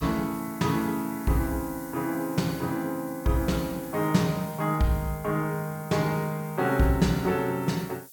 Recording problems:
background hiss; SNR 17 dB

